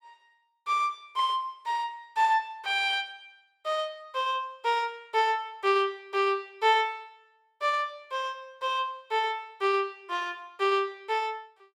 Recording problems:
none

